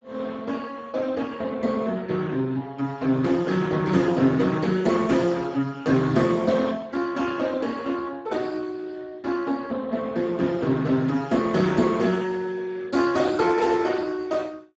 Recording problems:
lossy compression; Speex, log-spectral distance 4 dB, nothing above 7.6 kHz

